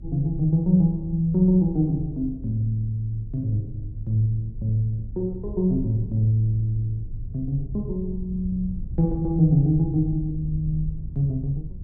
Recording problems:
low-frequency rumble; below 90 Hz, SNR 12 dB

